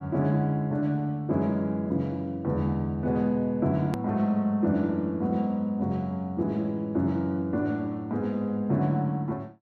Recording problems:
edit click; at 4 s

